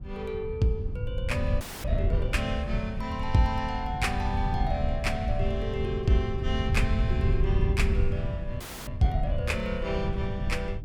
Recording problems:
wind noise; below 100 Hz, SNR 0 dB
audio freezing; at 1.5 s and at 8.5 s

